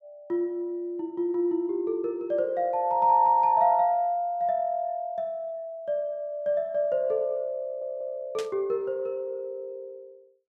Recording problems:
stutter; at 7.5 s
static burst; at 8.5 s; peak -7 dB vs average level

